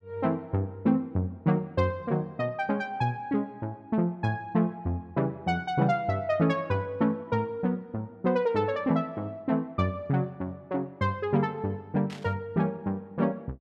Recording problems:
static burst; at 12 s; peak -11 dB vs average level

